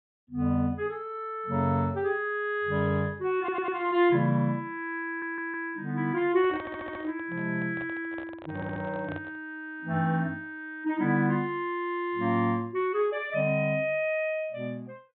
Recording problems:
treble cut off; nothing above 4 kHz
audio stuttering; 4 times, first at 3.5 s
microphone handling noise; from 6.5 to 9.5 s; peak -8 dB vs average level

